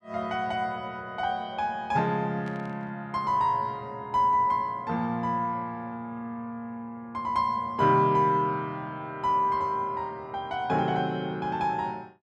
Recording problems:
burst of static; at 2.5 s; peak -16 dB vs average level

